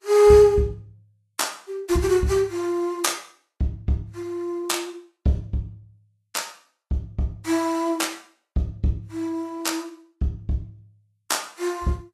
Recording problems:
lossy codec; Vorbis, log-spectral distance 2 dB, nothing above 13.8 kHz

